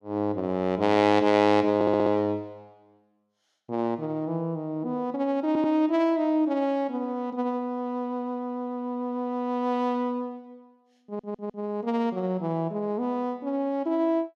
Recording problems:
audio stuttering; at 2 s, at 5.5 s and at 11 s

